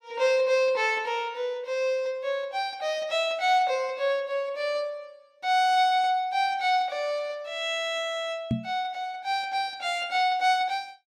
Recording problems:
knock on the microphone; at 8.5 s; peak +3 dB vs average level

